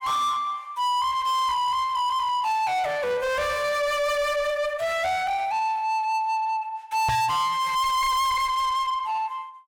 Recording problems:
distortion; soft clipping, signal-to-distortion ratio 6 dB
microphone bump; at 7 s; peak +5 dB vs average level

